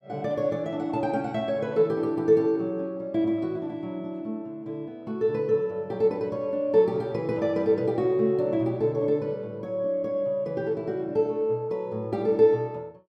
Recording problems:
none

